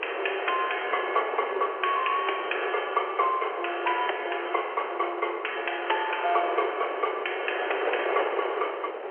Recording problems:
telephone audio; 340 Hz to 3.2 kHz, G.711
wind on the microphone; below 970 Hz, SNR 6 dB

